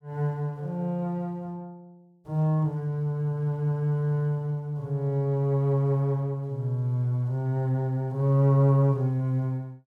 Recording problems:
none

